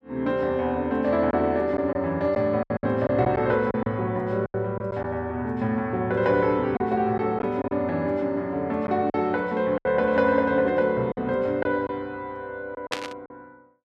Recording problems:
packet loss; 6% of the sound replaced, filled with silence
burst of static; at 13 s; peak +1 dB vs average level

